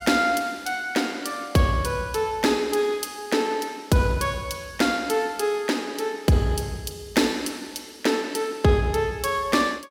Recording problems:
none

